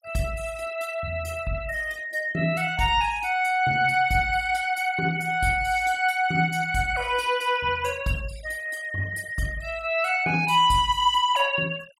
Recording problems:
noise reduction artefacts; signal-to-artefact ratio 22 dB

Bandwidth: 16.5 kHz